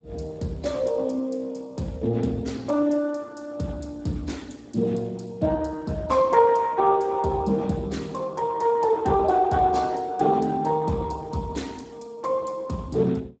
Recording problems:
codec artefacts; Speex, log-spectral distance 3 dB, nothing above 7.6 kHz

